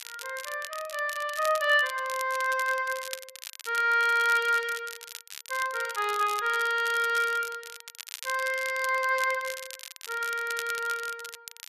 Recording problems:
crackle; vinyl, SNR 13 dB

